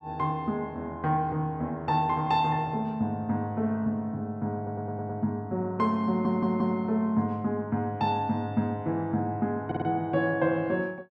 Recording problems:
stutter; at 4.5 s, at 6 s and at 9.5 s

